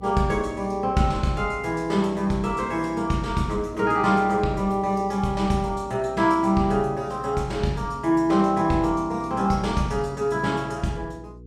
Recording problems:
hum; 60 Hz, harmonics up to 480 Hz, SNR 20 dB

